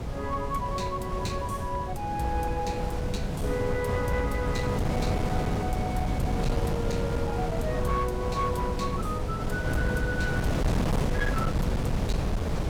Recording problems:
distorted audio; hard clipping, signal-to-distortion ratio 12 dB
wind on the microphone; below 300 Hz, SNR -2 dB

